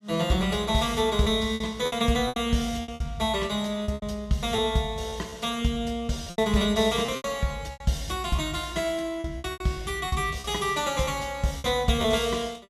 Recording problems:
lost packets; 10% of the sound replaced, filled with repeated pitch periods

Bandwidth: 14.5 kHz